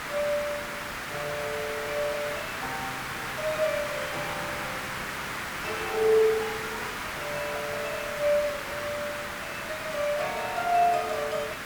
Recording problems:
hiss; SNR 3 dB

